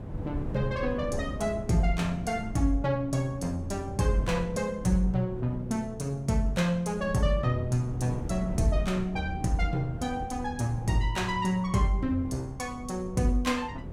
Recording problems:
wind on the microphone; below 210 Hz, SNR 10 dB

